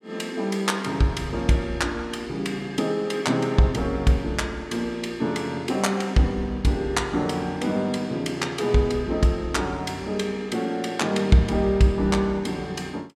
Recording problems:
none

